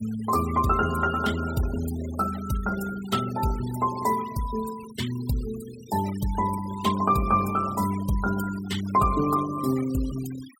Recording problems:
denoising artefacts; signal-to-artefact ratio 16 dB

